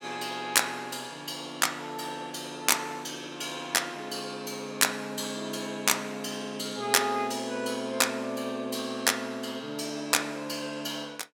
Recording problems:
none

